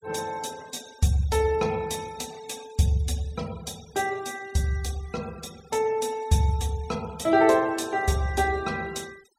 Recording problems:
noise reduction artefacts; signal-to-artefact ratio 21 dB

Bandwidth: 16 kHz